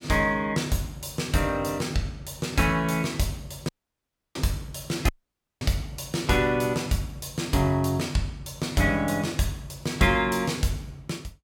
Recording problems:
audio cutting out; at 3.5 s for 0.5 s and at 5 s for 0.5 s

